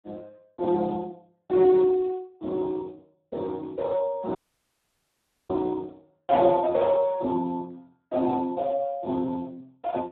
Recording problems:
phone line; 220 Hz to 2.1 kHz, Speex
audio cutting out; at 4.5 s for 1 s

